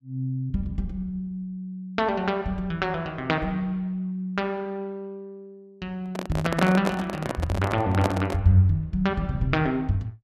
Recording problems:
handling noise; from 6 to 8.5 s; peak +5 dB vs average level

